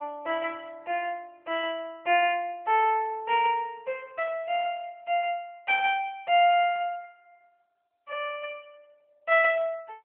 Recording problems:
phone line; 320 Hz to 3.2 kHz, AMR-NB

